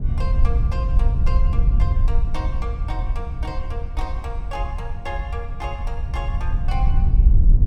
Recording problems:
wind noise; below 66 Hz, SNR -11 dB

